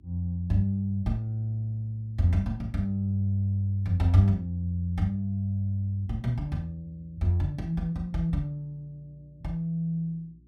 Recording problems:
electrical hum; 60 Hz, harmonics up to 360 Hz, SNR 27 dB

